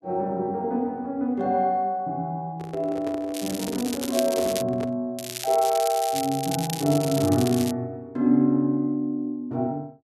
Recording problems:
handling noise; from 2.5 to 5 s; peak -5 dB vs average level
crackle; from 3.5 to 4.5 s and from 5 to 7.5 s; loose cable, SNR 9 dB

